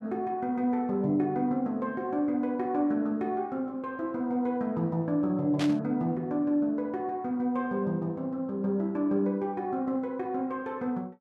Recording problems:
burst of static; at 5.5 s; peak -2 dB vs average level

